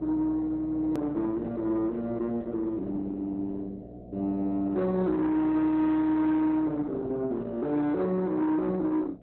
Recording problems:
lossy compression; Opus, log-spectral distance 2 dB, nothing above 13.1 kHz
distortion; soft clipping, signal-to-distortion ratio 11 dB
hum; 60 Hz, harmonics up to 720 Hz, SNR 17 dB
edit click; at 1 s

